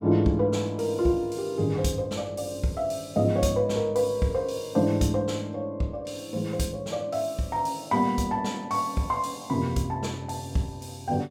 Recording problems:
none

